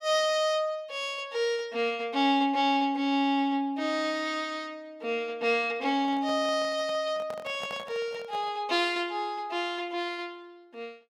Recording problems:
handling noise; from 6 to 8.5 s; peak -8 dB vs average level

